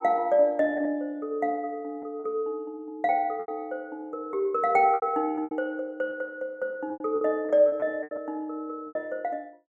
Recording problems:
packet loss; 8% of the sound replaced, filled with repeated pitch periods

